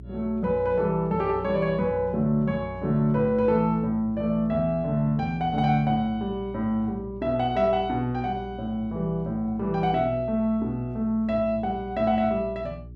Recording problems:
hum; 60 Hz, harmonics up to 420 Hz, SNR 17 dB

